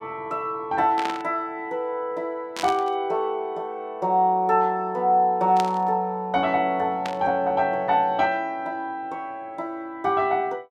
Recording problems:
static burst; 4 times, first at 1 s; peak -3 dB vs average level

